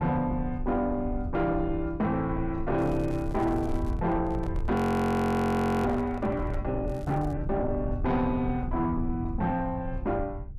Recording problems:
distorted audio; soft clipping, signal-to-distortion ratio 11 dB
rumble; below 100 Hz, SNR 8 dB
crackle; from 3 to 4 s and at 7 s; loose cable, SNR 27 dB
handling noise; from 3 to 6.5 s; peak -7 dB vs average level
frozen audio; at 5 s for 1 s

